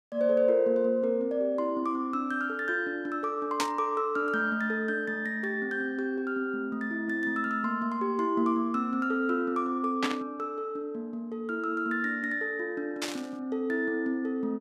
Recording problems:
burst of static; at 3.5 s, at 10 s and at 13 s; peak +3 dB vs average level

